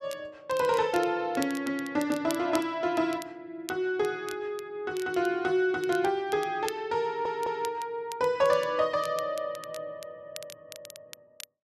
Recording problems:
crackling; vinyl, SNR 17 dB
audio stuttering; at 7 s

